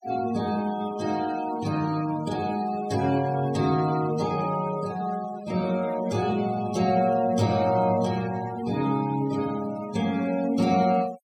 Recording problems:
denoising artefacts; signal-to-artefact ratio 17 dB

